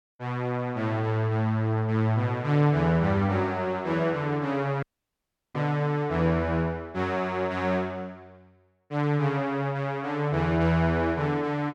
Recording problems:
audio cutting out; at 5 s for 0.5 s

